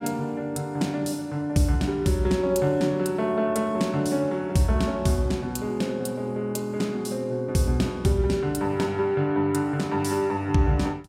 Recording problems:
none

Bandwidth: 16 kHz